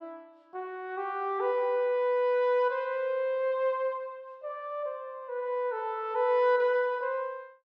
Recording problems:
none

